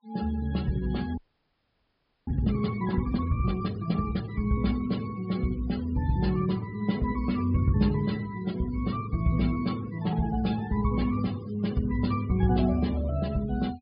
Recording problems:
low-pass filter; nothing above 5.5 kHz
denoising artefacts; signal-to-artefact ratio 20 dB
audio freezing; at 1 s for 1 s

